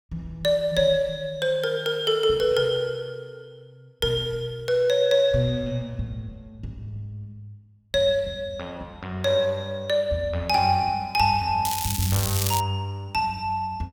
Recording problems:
crackle; at 12 s; loose cable, SNR 4 dB

